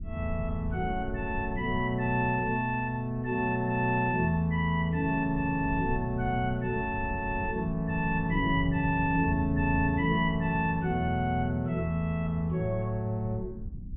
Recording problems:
treble missing; nothing above 3.3 kHz
rumble; below 120 Hz, SNR 12 dB

